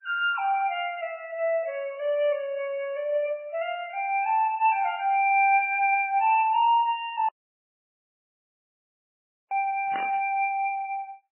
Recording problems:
lossy codec; MP3, log-spectral distance 2 dB, nothing above 2.4 kHz
audio cutting out; at 7.5 s for 2 s
static burst; at 10 s; peak -5 dB vs average level

